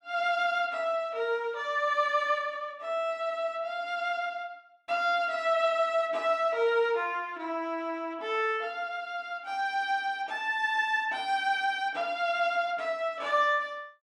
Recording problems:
none

